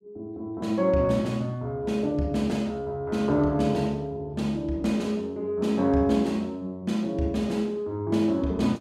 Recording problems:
none

